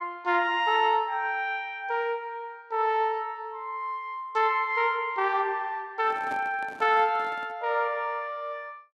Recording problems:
microphone handling noise; from 6 to 7.5 s; peak -9 dB vs average level

